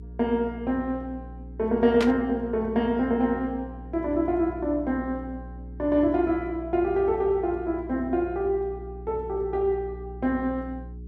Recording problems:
mains hum; 60 Hz, harmonics up to 420 Hz, SNR 15 dB
static burst; at 2 s; peak -1 dB vs average level

